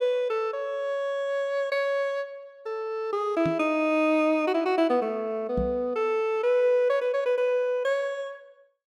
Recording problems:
knock on the microphone; at 3.5 s and at 5.5 s; peak -1 dB vs average level

